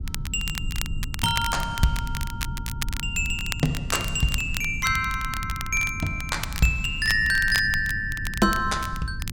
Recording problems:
low-frequency rumble; below 120 Hz, SNR 9 dB
crackling; vinyl, SNR 10 dB

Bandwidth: 16.5 kHz